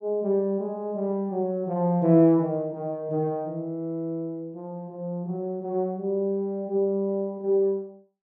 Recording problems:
none

